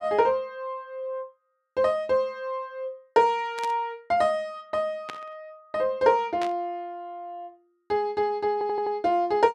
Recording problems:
static burst; at 3.5 s, at 5 s and at 6.5 s; peak -5 dB vs average level
stutter; at 8.5 s

